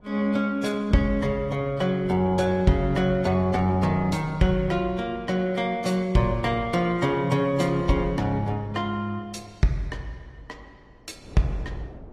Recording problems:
codec artefacts; AAC, log-spectral distance 2 dB, nothing above 13.1 kHz
wind noise; below 440 Hz, SNR 20 dB

